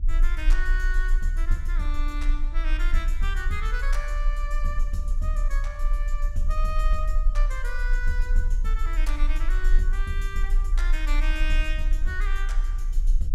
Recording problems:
rumble; below 34 Hz, strongest tone 30 Hz, SNR -6 dB

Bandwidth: 16.5 kHz